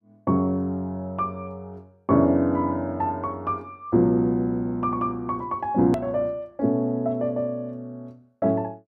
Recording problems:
hard cut with a click; at 6 s

